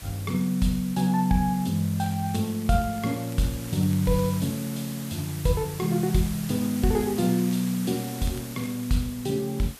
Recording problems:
background hiss; slope -1 dB per octave, SNR 14 dB
crackling; from 2 to 4.5 s and from 7 to 9 s; loose cable, SNR 25 dB

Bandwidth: 14.5 kHz